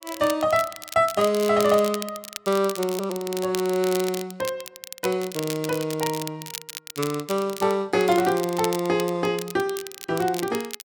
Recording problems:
crackling; vinyl, SNR 12 dB

